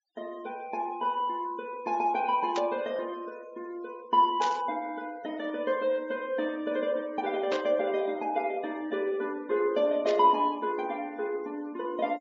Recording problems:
treble missing; nothing above 7.3 kHz
denoising artefacts; signal-to-artefact ratio 25 dB
burst of static; 4 times, first at 2.5 s; peak -4 dB vs average level

